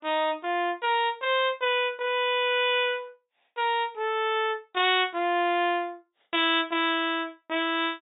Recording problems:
low-pass filter; nothing above 4 kHz

